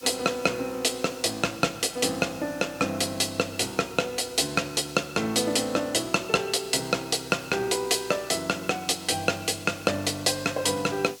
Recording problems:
hiss; SNR 20 dB

